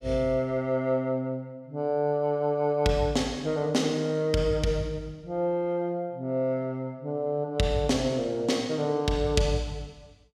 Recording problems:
none

